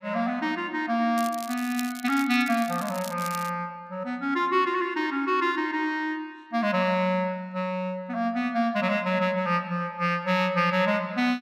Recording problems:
crackling; from 1 to 3.5 s; loose cable, SNR 14 dB

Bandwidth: 15 kHz